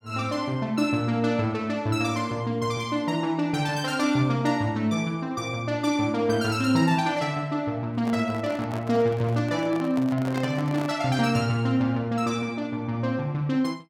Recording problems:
microphone handling noise; from 8 to 11 s; peak -5 dB vs average level

